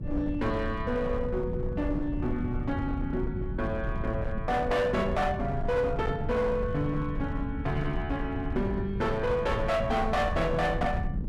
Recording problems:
distortion; hard clipping, signal-to-distortion ratio 11 dB
low-frequency rumble; below 160 Hz, SNR 5 dB

